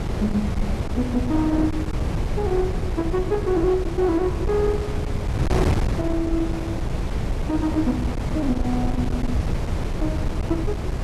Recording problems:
distortion; hard clipping, uneven, signal-to-distortion ratio 10 dB
wind noise; below 220 Hz, SNR 1 dB

